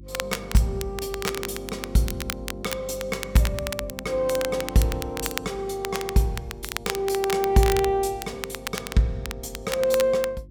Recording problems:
electrical hum; 50 Hz, harmonics up to 350 Hz, SNR 19 dB
crackling; vinyl, SNR 9 dB

